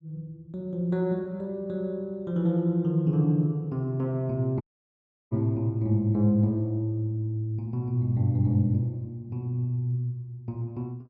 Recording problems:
audio cutting out; at 4.5 s for 0.5 s

